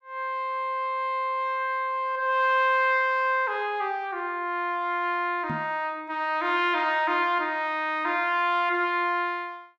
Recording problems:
microphone thump; at 5.5 s; peak -4 dB vs average level

